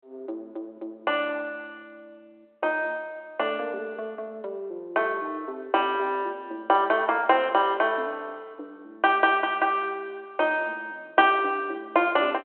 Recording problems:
phone line; 260 Hz to 3.3 kHz, G.726

